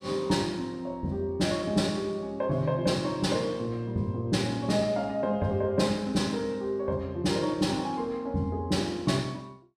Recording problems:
none

